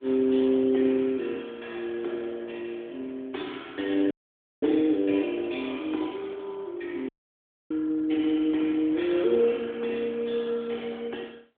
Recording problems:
telephone audio; 240 Hz to 3.5 kHz, AMR-NB
audio cutting out; at 4 s for 0.5 s and at 7 s for 0.5 s

